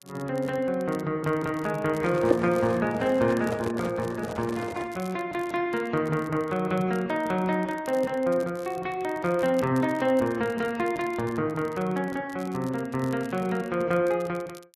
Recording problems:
lossy compression; AAC, then AAC, log-spectral distance 2 dB
crackle; vinyl, SNR 24 dB
microphone handling noise; from 2 to 5 s; peak -2 dB vs average level

